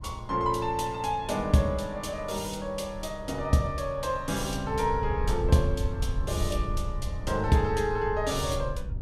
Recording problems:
wind noise; below 86 Hz, SNR 8 dB

